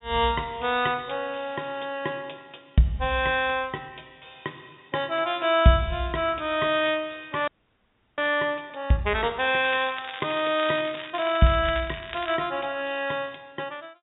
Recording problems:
treble missing; nothing above 3.7 kHz
frozen audio; at 7.5 s for 0.5 s
crackling; from 9.5 to 12 s; loose cable, SNR 13 dB

